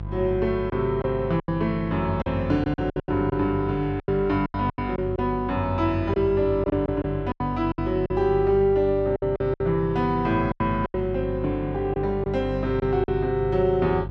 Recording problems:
electrical hum; 50 Hz, harmonics up to 700 Hz, SNR 9 dB
lost packets; 10% of the sound replaced, filled with silence

